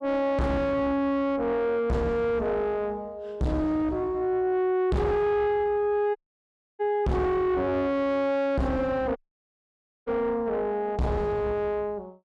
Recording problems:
distortion; soft clipping, signal-to-distortion ratio 6 dB
dropout; at 6 s for 0.5 s and at 9 s for 1 s

